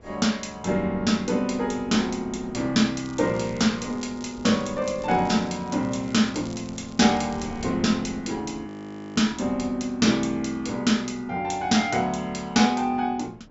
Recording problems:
low-pass filter; nothing above 7.6 kHz
wind noise; below 450 Hz, SNR 21 dB
crackling; from 3 to 7.5 s; loose cable, SNR 24 dB
audio freezing; at 8.5 s

